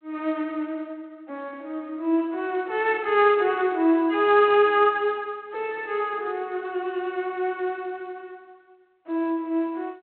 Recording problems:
phone line; 240 Hz to 3.5 kHz, G.726

